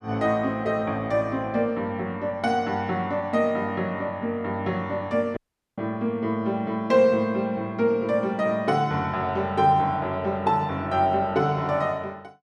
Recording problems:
audio cutting out; at 5.5 s

